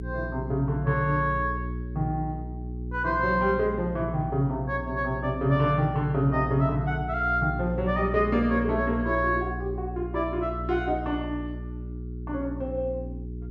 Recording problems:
hum; 60 Hz, harmonics up to 420 Hz, SNR 8 dB

